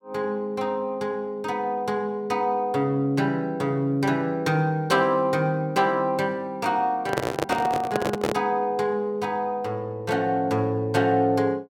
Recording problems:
handling noise; from 7 to 8.5 s; peak +3 dB vs average level

